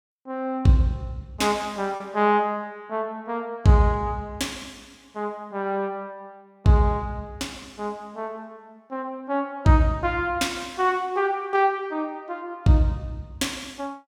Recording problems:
packet loss; 0.3% of the sound replaced, filled with repeated pitch periods

